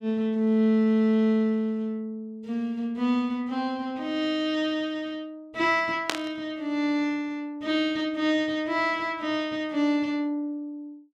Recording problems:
static burst; at 6 s; peak +4 dB vs average level

